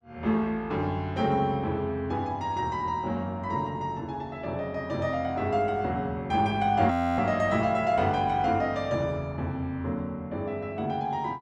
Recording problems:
frozen audio; at 7 s

